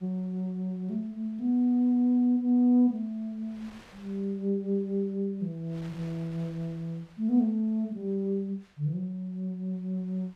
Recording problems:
wind noise; below 2.8 kHz, SNR 29 dB

